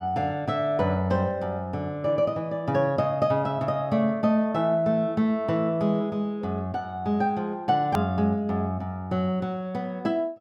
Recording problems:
click at an edit; at 8 s

